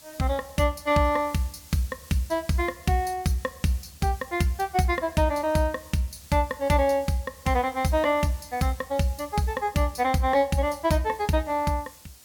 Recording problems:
hiss; SNR 22 dB

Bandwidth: 18 kHz